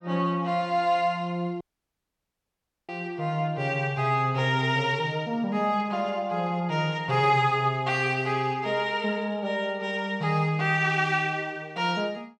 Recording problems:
dropout; at 1.5 s for 1.5 s

